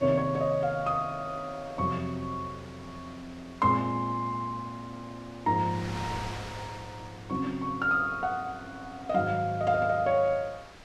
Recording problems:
wind noise; below 2.9 kHz, SNR 17 dB

